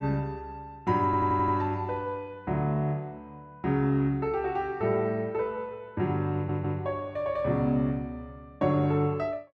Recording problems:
stutter; at 1 s and at 6.5 s

